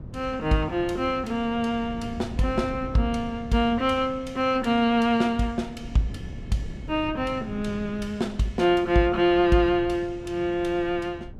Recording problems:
wind on the microphone; below 200 Hz, SNR 15 dB

